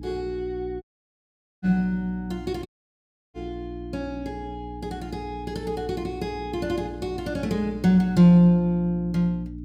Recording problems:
electrical hum; 60 Hz, harmonics up to 300 Hz, SNR 14 dB
audio cutting out; at 1 s for 1 s and at 2.5 s for 0.5 s

